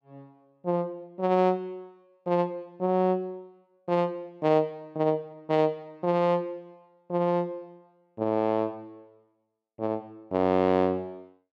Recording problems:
none

